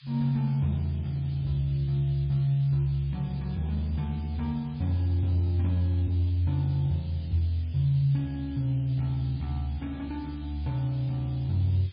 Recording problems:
codec artefacts; MP3, log-spectral distance 3 dB, nothing above 11.3 kHz
hiss; SNR 26 dB

